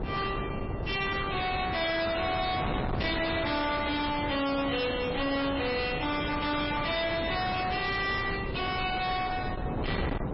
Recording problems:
lossy codec; MP3, log-spectral distance 6 dB, nothing above 5.5 kHz
distortion; hard clipping, signal-to-distortion ratio 6 dB
wind noise; below 740 Hz, SNR 5 dB

